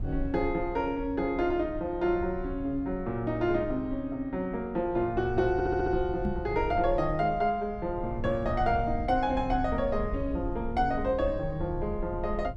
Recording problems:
low-frequency rumble; below 88 Hz, SNR 10 dB
audio stuttering; at 5.5 s
microphone bump; at 6.5 s; peak +2 dB vs average level

